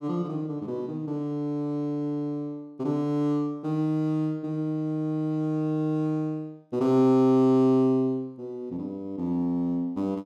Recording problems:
none

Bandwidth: 13.5 kHz